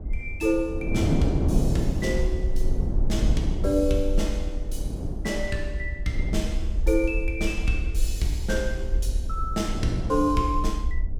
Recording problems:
low-frequency rumble; below 54 Hz, SNR 3 dB
wind on the microphone; below 270 Hz, SNR 2 dB

